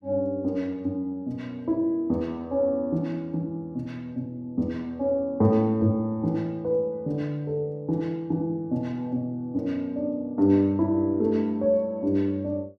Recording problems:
none

